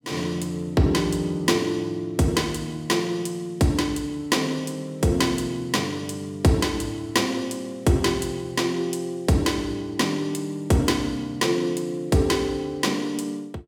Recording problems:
none

